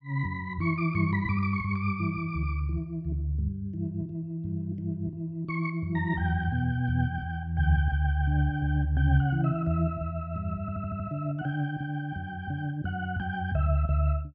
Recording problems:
audio stuttering; at 11 s

